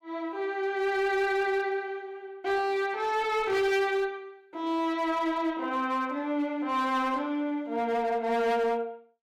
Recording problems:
distortion; hard clipping, signal-to-distortion ratio 11 dB

